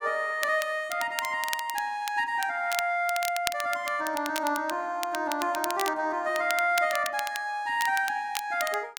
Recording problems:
crackle; vinyl, SNR 9 dB

